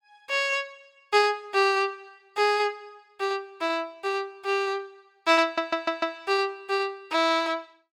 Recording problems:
audio stuttering; at 5.5 s

